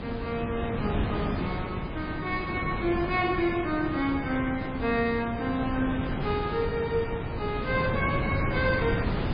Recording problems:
lossy codec; MP3, log-spectral distance 4 dB, nothing above 4.6 kHz
wind on the microphone; below 480 Hz, SNR 3 dB

